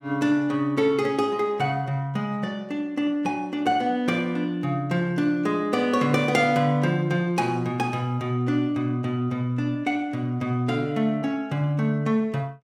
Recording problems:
none

